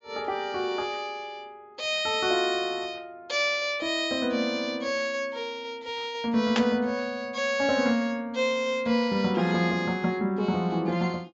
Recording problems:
low-pass filter; nothing above 7.5 kHz
static burst; at 6.5 s; peak +3 dB vs average level

